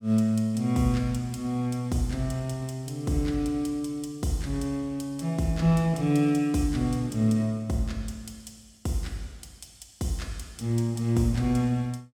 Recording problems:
none

